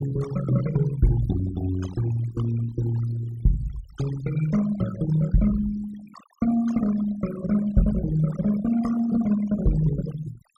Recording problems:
noise reduction artefacts; signal-to-artefact ratio 14 dB

